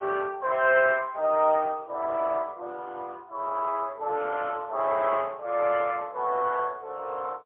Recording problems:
phone line; 340 Hz to 3.6 kHz, AMR-NB, then MP3

